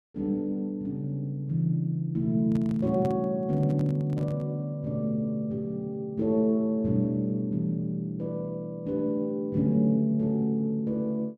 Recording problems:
microphone handling noise; from 2.5 to 4.5 s; peak -3 dB vs average level

